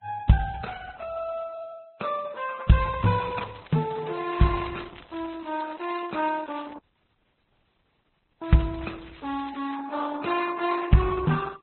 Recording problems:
codec artefacts; Opus, then Vorbis, log-spectral distance 6 dB, nothing above 4 kHz
crackling; from 3 to 6.5 s and from 8.5 to 10 s; loose cable, SNR 23 dB
dropout; at 7 s for 1.5 s

